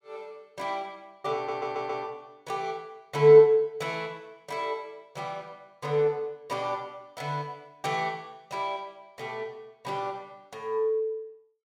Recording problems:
audio stuttering; at 1.5 s

